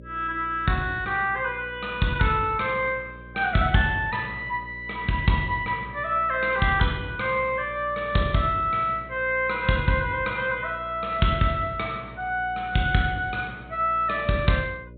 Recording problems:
low-pass filter; nothing above 4 kHz
hum; 60 Hz, harmonics up to 600 Hz, SNR 20 dB

